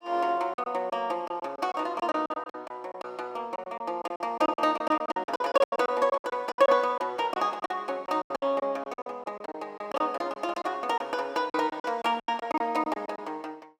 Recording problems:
lost packets; 15% of the sound replaced, filled with silence

